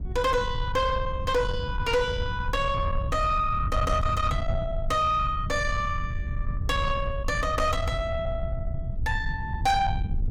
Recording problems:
distortion; soft clipping, signal-to-distortion ratio 11 dB
low-frequency rumble; below 100 Hz, SNR 5 dB

